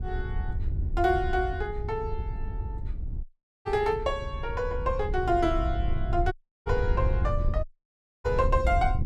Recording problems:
wind on the microphone; below 86 Hz, SNR 3 dB
audio cutting out; at 3 s, at 6.5 s and at 7.5 s for 0.5 s

